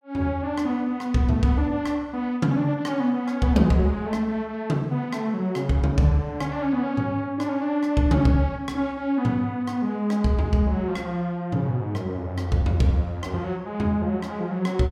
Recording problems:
none

